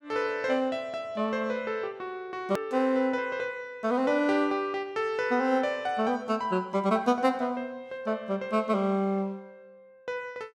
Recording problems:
hard cut with a click; at 2.5 s

